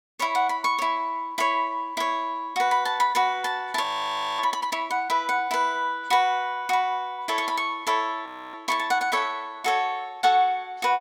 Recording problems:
audio freezing; at 4 s for 0.5 s and at 8.5 s

